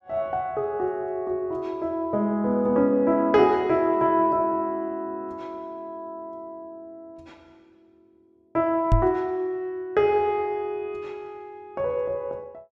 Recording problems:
knock on the microphone; at 9 s; peak +7 dB vs average level

